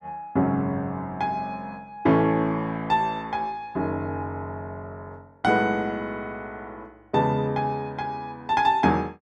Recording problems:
none

